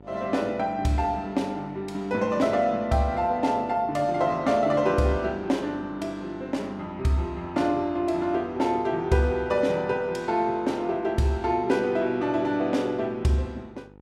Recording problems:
hum; 50 Hz, harmonics up to 1.4 kHz, SNR 24 dB

